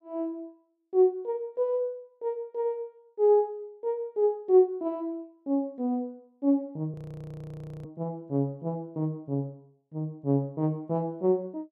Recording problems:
frozen audio; at 7 s for 1 s

